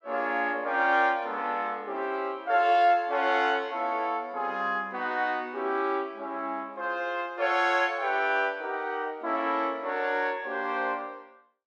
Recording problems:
none

